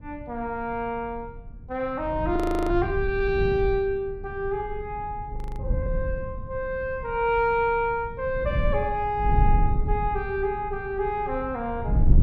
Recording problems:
wind on the microphone; below 94 Hz, SNR 4 dB
frozen audio; at 2.5 s and at 5.5 s

